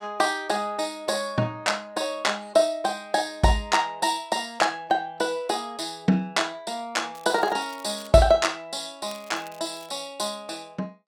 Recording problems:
crackling; at 7 s and at 9 s; loose cable, SNR 24 dB

